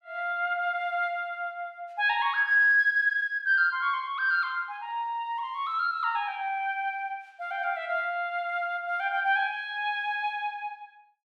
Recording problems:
none

